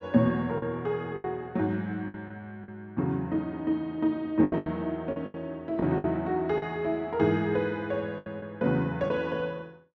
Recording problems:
lost packets; 8% of the sound replaced, filled with the last packet

